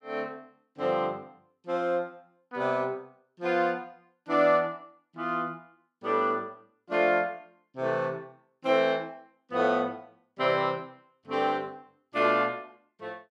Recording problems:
none

